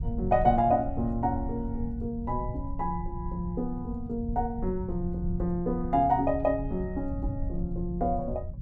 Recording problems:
low-frequency rumble; below 100 Hz, SNR 8 dB

